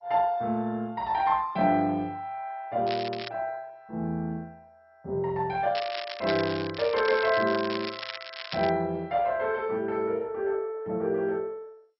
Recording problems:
lossy codec; MP2, log-spectral distance 6 dB, nothing above 5.5 kHz
crackle; at 3 s and from 6 to 8.5 s; loose cable, SNR 9 dB

